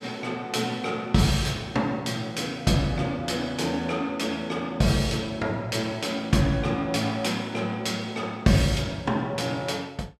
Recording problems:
none

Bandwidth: 14 kHz